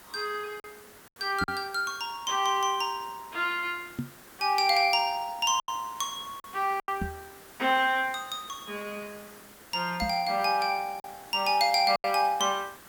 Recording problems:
background hiss; SNR 21 dB
packet loss; 4% of the sound replaced, filled with silence
microphone thump; 4 times, first at 1.5 s; peak -1 dB vs average level

